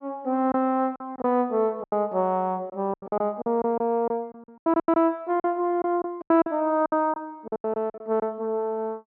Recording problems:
lost packets; 13% of the sound replaced, filled with silence

